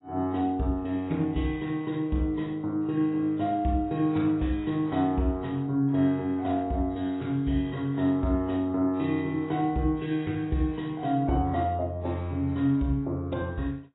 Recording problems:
lossy compression; AAC, log-spectral distance 2 dB, nothing above 3.8 kHz

